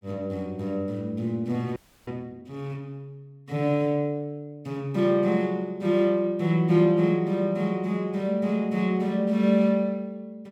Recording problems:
audio freezing; at 2 s

